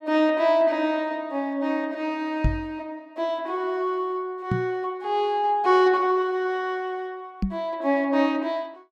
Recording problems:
microphone bump; at 2.5 s, at 4.5 s and at 7.5 s; peak +5 dB vs average level

